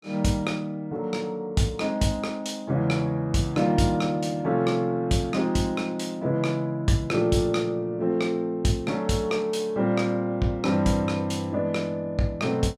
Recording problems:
none

